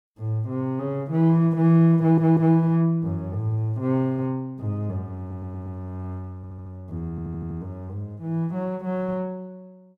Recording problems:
audio stuttering; 4 times, first at 2 s

